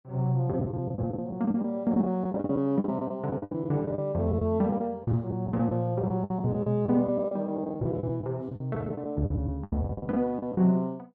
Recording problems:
packet loss; 16% of the sound replaced, filled with the last packet

